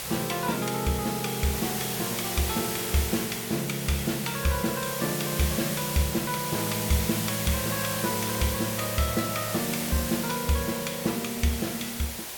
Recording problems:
hiss; slope -1 dB per octave, SNR 2 dB

